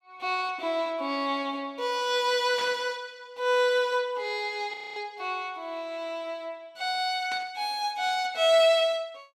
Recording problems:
burst of static; at 2.5 s and at 7.5 s; peak -6 dB vs average level
frozen audio; at 4.5 s

